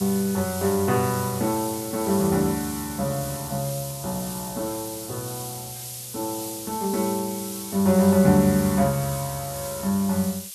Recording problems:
hiss; SNR 9 dB

